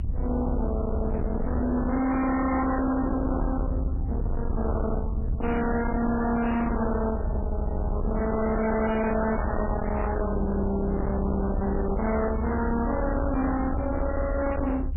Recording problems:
codec artefacts; MP3, log-spectral distance 3 dB, nothing above 2.4 kHz
distorted audio; hard clipping, signal-to-distortion ratio 6 dB
rumble; below 230 Hz, SNR 3 dB

